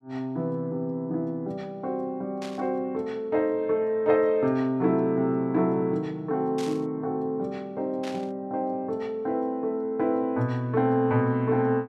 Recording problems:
static burst; at 2.5 s, at 6.5 s and at 8 s; peak -9 dB vs average level

